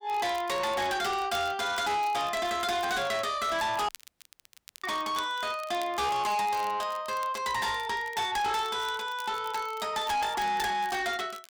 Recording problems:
distortion; soft clipping, signal-to-distortion ratio 8 dB
crackle; vinyl, SNR 20 dB
audio cutting out; at 4 s for 1 s

